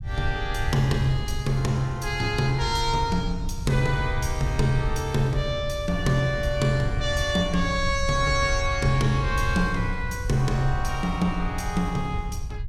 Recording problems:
low-frequency rumble; below 84 Hz, SNR 7 dB

